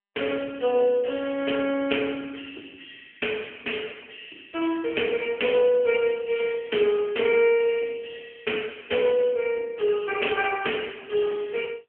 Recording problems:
phone line; 300 Hz to 3.2 kHz, AMR-NB

